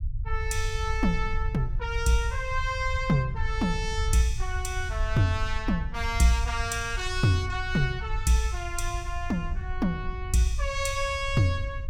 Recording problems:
low-frequency rumble; below 72 Hz, SNR 6 dB

